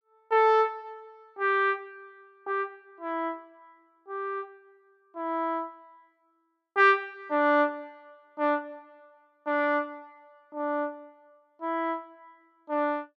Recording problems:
none

